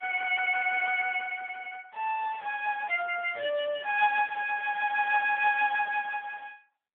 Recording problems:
phone line; 520 Hz to 3.3 kHz, AMR-NB

